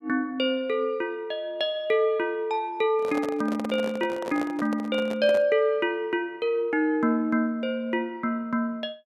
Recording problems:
handling noise; from 3 to 5.5 s; peak -4 dB vs average level

